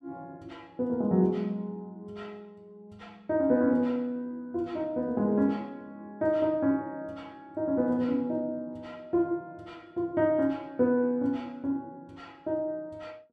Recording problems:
none

